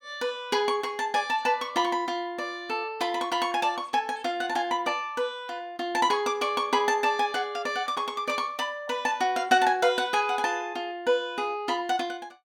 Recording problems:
none

